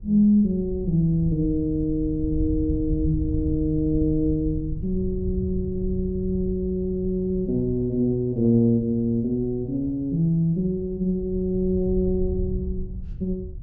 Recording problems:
wind noise; below 92 Hz, SNR 10 dB

